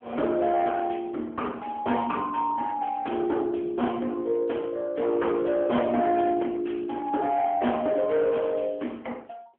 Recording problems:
phone line; 190 Hz to 3.3 kHz, AMR-NB
distorted audio; hard clipping, signal-to-distortion ratio 12 dB

